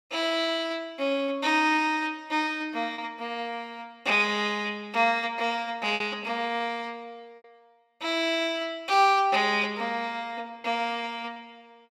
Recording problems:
lost packets; 2% of the sound replaced, filled with repeated pitch periods

